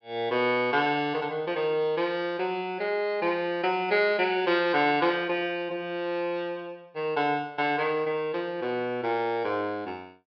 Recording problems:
treble cut off; nothing above 5.5 kHz

